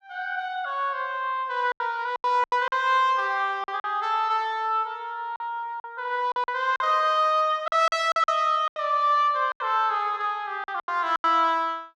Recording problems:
lost packets; 9% of the sound replaced, filled with silence

